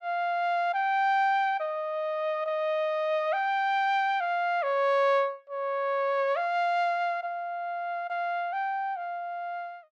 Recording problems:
none

